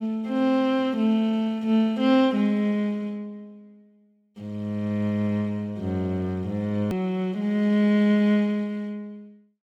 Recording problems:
edit click; at 7 s

